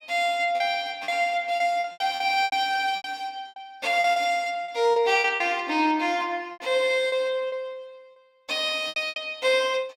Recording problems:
packet loss; 11% of the sound replaced, filled with repeated pitch periods

